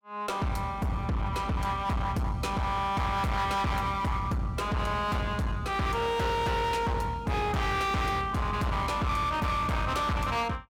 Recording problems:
distortion; hard clipping, uneven, signal-to-distortion ratio 6 dB

